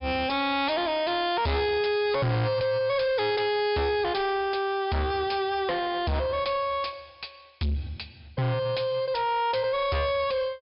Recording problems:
treble missing; nothing above 5.5 kHz
distortion; soft clipping, signal-to-distortion ratio 6 dB

